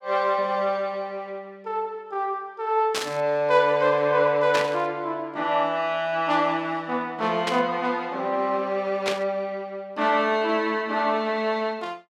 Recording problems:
burst of static; 4 times, first at 3 s; peak +2 dB vs average level

